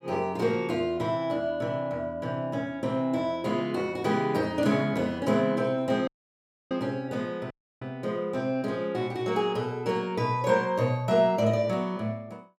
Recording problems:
audio cutting out; at 6 s for 0.5 s and at 7.5 s

